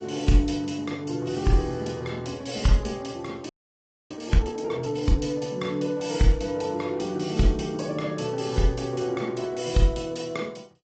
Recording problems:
treble missing; nothing above 7.6 kHz
lossy compression; AAC, log-spectral distance 3 dB
frozen audio; at 3.5 s for 0.5 s

